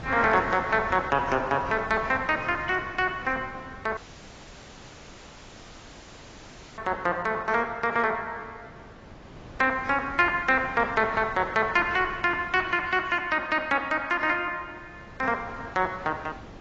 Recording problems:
lossy compression; AAC, log-spectral distance 5 dB
wind on the microphone; below 860 Hz, SNR 19 dB
audio cutting out; at 4 s for 3 s

